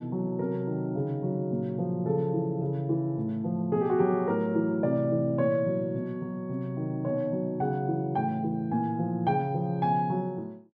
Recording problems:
none

